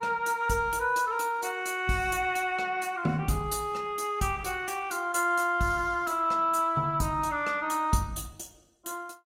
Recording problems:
codec artefacts; Opus, log-spectral distance 3 dB, nothing above 16 kHz

